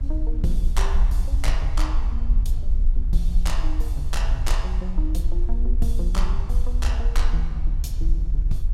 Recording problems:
hum; 50 Hz, harmonics up to 350 Hz, SNR 20 dB
low-frequency rumble; below 48 Hz, strongest tone 20 Hz, SNR -8 dB
wind on the microphone; below 180 Hz, SNR 16 dB

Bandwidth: 16 kHz